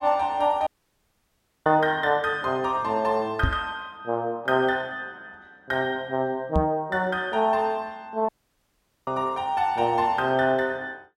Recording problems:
dropout; at 0.5 s for 1 s and at 8.5 s for 1 s
microphone thump; at 3.5 s and at 6.5 s; peak +5 dB vs average level

